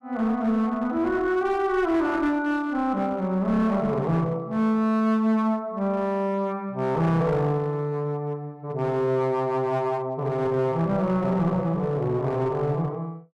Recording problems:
distortion; hard clipping, uneven, signal-to-distortion ratio 10 dB

